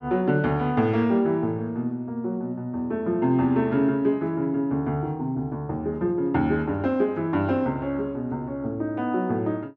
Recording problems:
none

